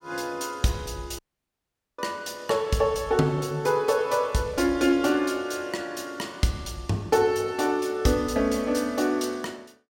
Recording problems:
audio cutting out; at 1 s for 1 s

